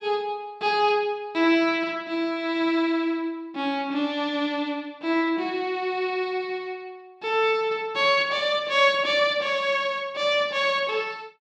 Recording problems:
none

